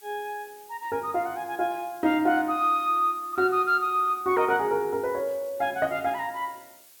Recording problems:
background hiss; slope +1 dB per octave, SNR 24 dB

